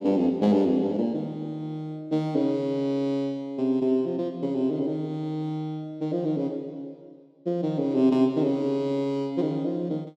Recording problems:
none

